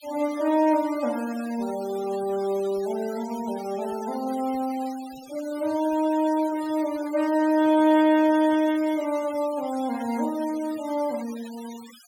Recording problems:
denoising artefacts; signal-to-artefact ratio 19 dB

